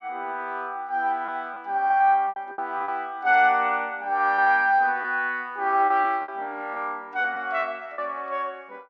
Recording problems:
lost packets; 7% of the sound replaced, filled with repeated pitch periods

